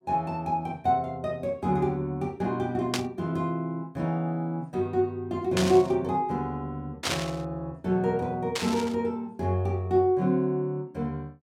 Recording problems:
burst of static; 4 times, first at 3 s; peak +4 dB vs average level

